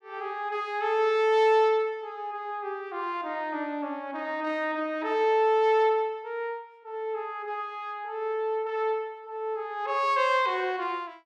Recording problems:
none

